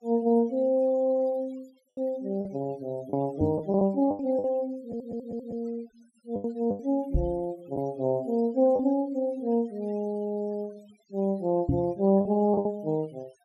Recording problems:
denoising artefacts; signal-to-artefact ratio 27 dB
lost packets; 5% of the sound replaced, filled with the last packet
knock on the microphone; at 3.5 s, at 7 s and at 12 s; peak +5 dB vs average level
audio stuttering; at 5 s

